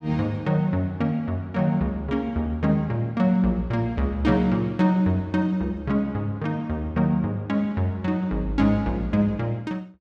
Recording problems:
none

